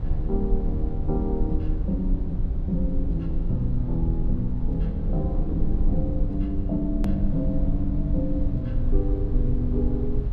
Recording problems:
low-frequency rumble; below 62 Hz, SNR 0 dB
hard cut with a click; at 7 s

